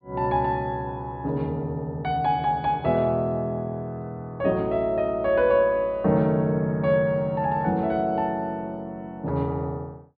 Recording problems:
treble missing; nothing above 4.8 kHz

